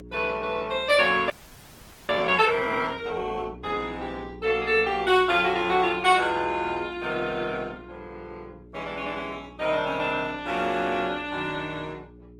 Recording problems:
lossy compression; Opus, log-spectral distance 3 dB, nothing above 15.5 kHz
hum; 60 Hz, harmonics up to 420 Hz, SNR 22 dB
audio freezing; at 1.5 s for 1 s

